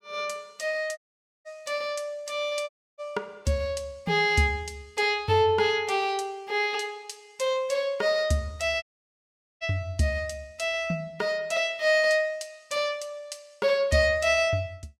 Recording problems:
dropout; at 1 s, at 2.5 s and at 9 s for 1 s

